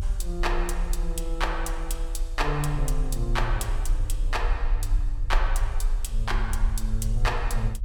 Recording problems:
low-frequency rumble; below 40 Hz, strongest tone 28 Hz, SNR -1 dB

